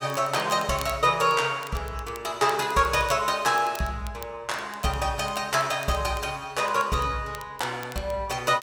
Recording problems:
crackle; vinyl, SNR 20 dB

